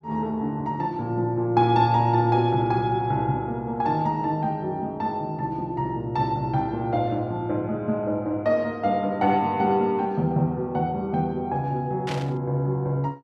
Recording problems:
static burst; at 12 s; peak -5 dB vs average level

